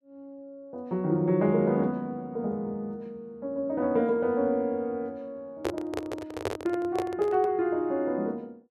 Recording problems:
handling noise; from 5.5 to 7.5 s; peak +2 dB vs average level

